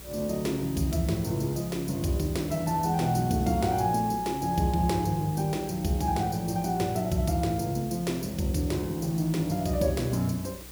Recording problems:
hum; 60 Hz, harmonics up to 540 Hz, SNR 21 dB
hiss; slope -1 dB per octave, SNR 16 dB

